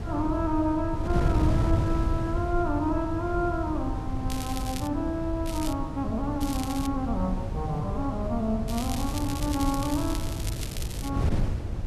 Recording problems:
wind on the microphone; below 140 Hz, SNR 1 dB
crackle; 4 times, first at 4.5 s; loose cable, SNR 9 dB

